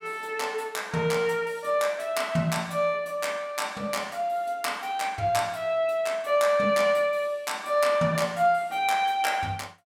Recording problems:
none

